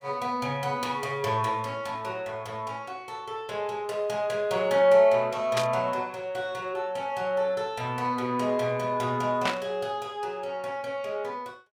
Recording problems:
static burst; at 5.5 s and at 9.5 s; peak +3 dB vs average level

